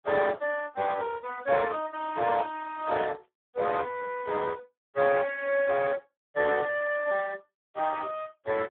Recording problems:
telephone audio; 320 Hz to 3.7 kHz, Speex
burst of static; at 3 s; peak -16 dB vs average level

